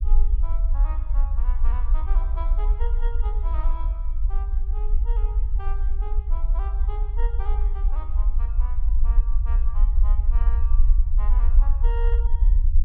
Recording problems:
low-frequency rumble; below 48 Hz, SNR -17 dB

